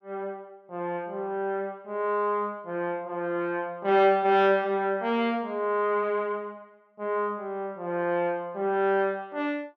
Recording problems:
none

